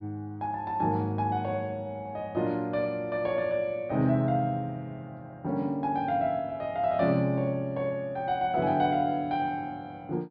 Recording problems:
treble missing; nothing above 5.5 kHz

